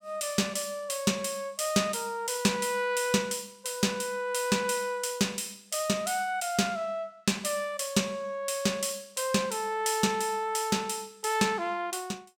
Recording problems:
none

